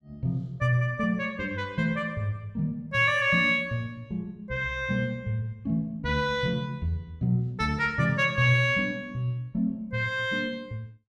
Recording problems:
none

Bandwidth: 12.5 kHz